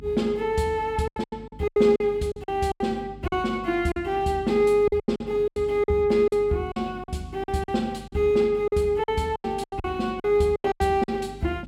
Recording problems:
mains hum; 50 Hz, harmonics up to 300 Hz, SNR 20 dB
lost packets; 14% of the sound replaced, filled with silence

